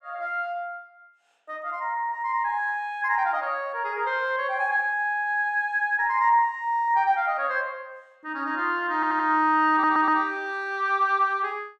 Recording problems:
audio stuttering; at 9 s and at 9.5 s

